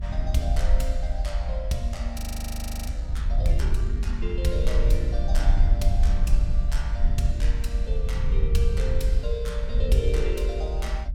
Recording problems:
low-frequency rumble; below 58 Hz, SNR -7 dB
frozen audio; at 2 s for 0.5 s

